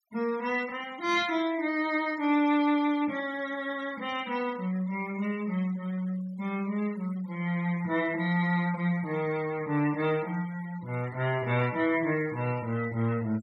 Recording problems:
denoising artefacts; signal-to-artefact ratio 21 dB

